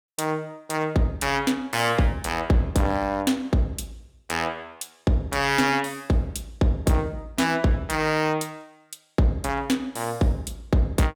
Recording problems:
distorted audio; hard clipping, signal-to-distortion ratio 11 dB

